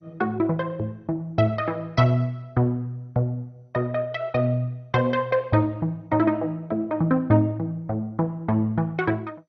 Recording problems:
lossy compression; MP2, log-spectral distance 2 dB, nothing above 6 kHz

